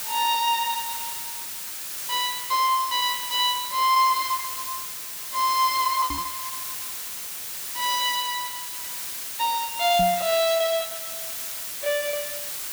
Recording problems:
hiss; slope +2 dB per octave, SNR 6 dB
lost packets; 14% of the sound replaced, filled with repeated pitch periods
microphone bump; at 6 s and at 10 s; peak -3 dB vs average level

